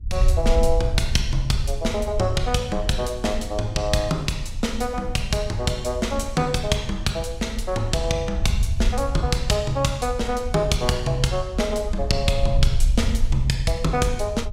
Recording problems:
wind noise; below 64 Hz, SNR 5 dB

